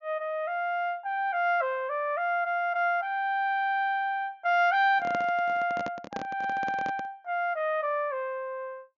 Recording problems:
low-pass filter; nothing above 7.1 kHz
microphone handling noise; from 5 to 7 s; peak -4 dB vs average level

